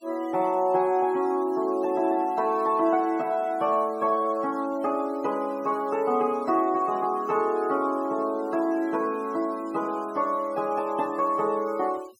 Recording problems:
denoising artefacts; signal-to-artefact ratio 26 dB

